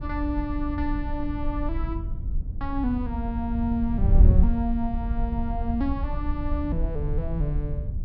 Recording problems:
low-pass filter; nothing above 5.5 kHz
wind noise; below 74 Hz, SNR -2 dB

